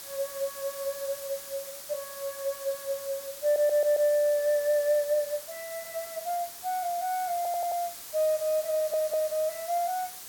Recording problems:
background hiss; slope +1 dB per octave, SNR 11 dB
stutter; at 3.5 s, at 7.5 s and at 8.5 s

